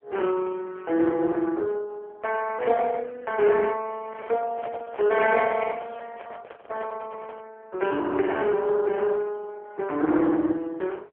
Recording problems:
telephone audio; 260 Hz to 3.2 kHz, AMR-NB
handling noise; from 4 to 7.5 s; peak -7 dB vs average level

